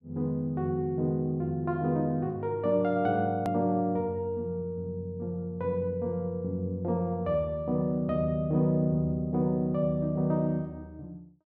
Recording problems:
edit click; at 3.5 s

